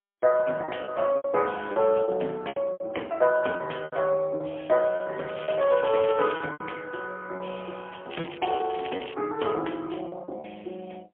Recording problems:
telephone audio; 280 Hz to 3.2 kHz, AMR-NB, then MP3
lost packets; 10% of the sound replaced, filled with repeated pitch periods
crackle; from 5.5 to 6.5 s, at 8 s and at 8.5 s; loose cable, SNR 14 dB

